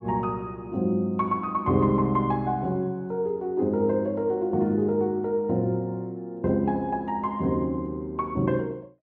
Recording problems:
none

